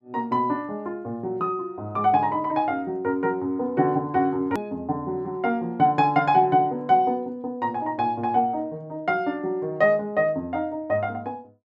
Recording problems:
edit click; at 4.5 s

